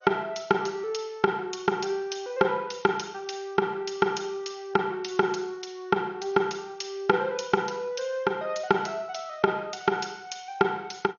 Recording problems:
lossy compression; MP2, log-spectral distance 5 dB, nothing above 6.7 kHz

